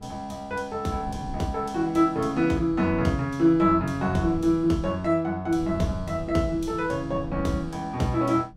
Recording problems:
wind noise; below 190 Hz, SNR 16 dB

